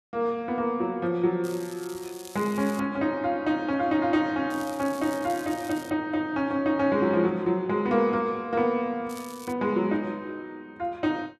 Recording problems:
crackle; from 1.5 to 3 s, from 4.5 to 6 s and at 9 s; loose cable, SNR 18 dB

